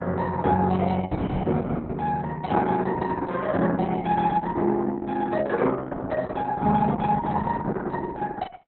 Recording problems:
lossy compression; Opus, log-spectral distance 3 dB, nothing above 4 kHz

